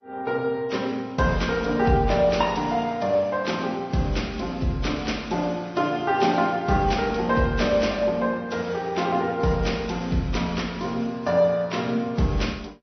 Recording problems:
codec artefacts; MP2, then AAC, log-spectral distance 3 dB, nothing above 6 kHz

